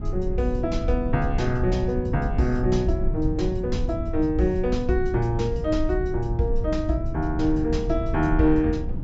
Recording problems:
treble cut off; nothing above 8 kHz
low-frequency rumble; below 92 Hz, SNR 5 dB

